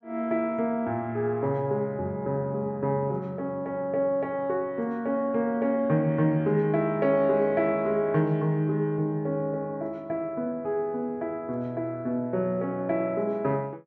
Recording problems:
treble missing; nothing above 8 kHz

